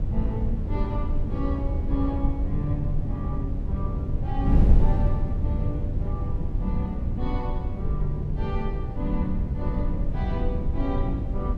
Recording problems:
wind on the microphone; below 96 Hz, SNR -5 dB

